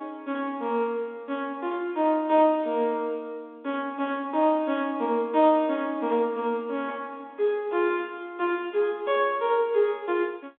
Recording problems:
phone line; 280 Hz to 3.5 kHz, G.711

